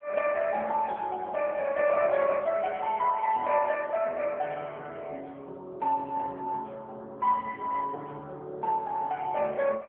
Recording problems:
telephone audio; 320 Hz to 3 kHz, AMR-NB

